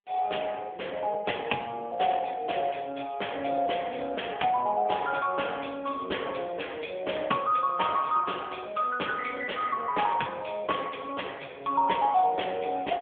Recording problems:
telephone audio; 300 Hz to 3.4 kHz, AMR-NB

